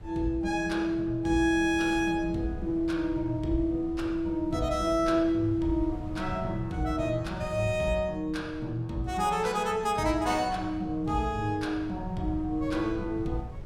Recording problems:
wind on the microphone; below 140 Hz, SNR 14 dB

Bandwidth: 17 kHz